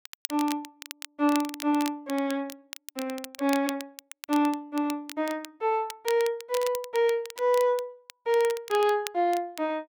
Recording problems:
crackle; vinyl, SNR 13 dB

